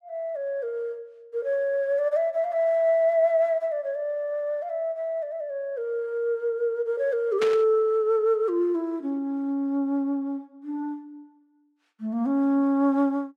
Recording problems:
static burst; at 7.5 s; peak -2 dB vs average level

